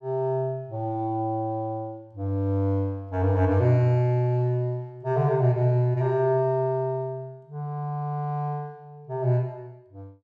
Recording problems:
none

